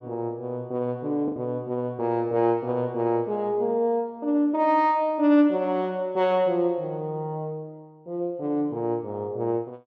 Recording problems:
lost packets; 0.8% of the sound replaced, filled with the last packet

